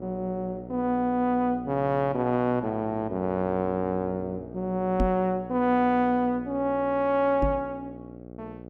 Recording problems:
hum; 60 Hz, harmonics up to 840 Hz, SNR 16 dB
microphone thump; at 5 s and at 7.5 s; peak +3 dB vs average level

